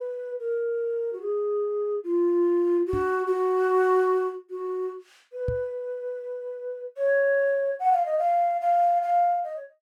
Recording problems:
microphone bump; at 3 s and at 5.5 s; peak -2 dB vs average level

